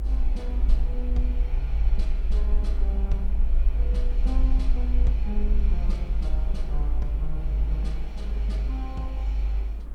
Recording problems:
hiss; slope -10 dB per octave, SNR 11 dB
low-frequency rumble; below 52 Hz, SNR -11 dB

